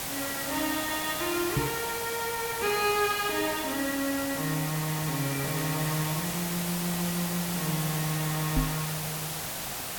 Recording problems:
hiss; SNR 2 dB
knock on the microphone; at 1.5 s and at 8.5 s; peak +6 dB vs average level

